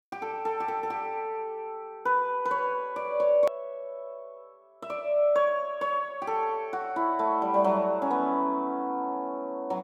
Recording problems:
edit click; at 3.5 s

